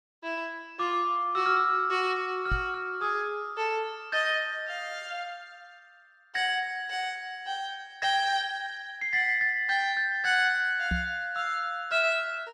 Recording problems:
microphone bump; at 2.5 s and at 11 s; peak 0 dB vs average level

